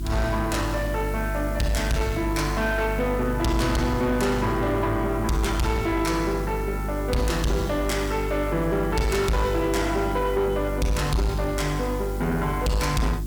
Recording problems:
distortion; soft clipping, signal-to-distortion ratio 10 dB
electrical hum; 50 Hz, harmonics up to 350 Hz, SNR 6 dB
background hiss; slope 0 dB per octave, SNR 20 dB

